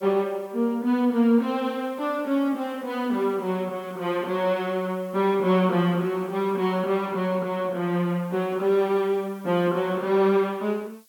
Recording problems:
hiss; SNR 30 dB

